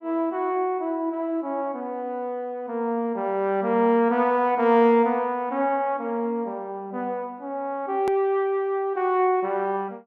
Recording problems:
edit click; at 8 s

